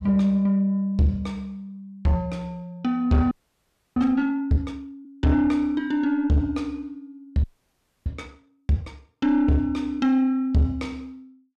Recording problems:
distortion; soft clipping, signal-to-distortion ratio 10 dB
audio freezing; at 3.5 s for 0.5 s and at 7.5 s for 0.5 s

